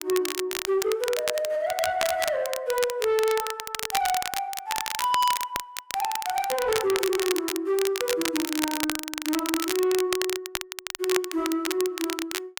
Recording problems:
distortion; soft clipping, signal-to-distortion ratio 11 dB
crackle; vinyl, SNR 4 dB

